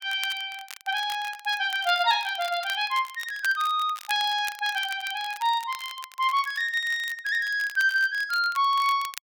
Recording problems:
crackling; vinyl, SNR 17 dB

